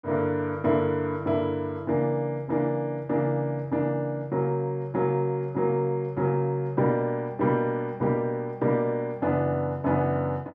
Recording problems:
none

